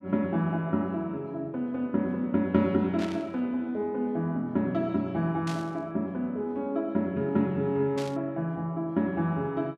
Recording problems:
static burst; at 3 s, at 5.5 s and at 8 s; peak -7 dB vs average level

